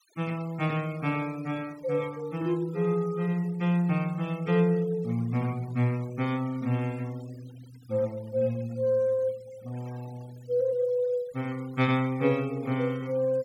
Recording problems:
noise reduction artefacts; signal-to-artefact ratio 23 dB

